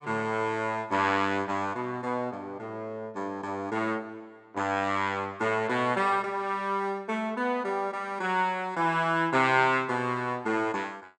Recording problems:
none

